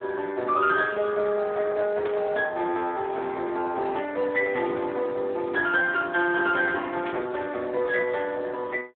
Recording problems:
phone line; 300 Hz to 4 kHz, Speex
burst of static; at 2 s, at 4.5 s and at 7 s; peak -9 dB vs average level

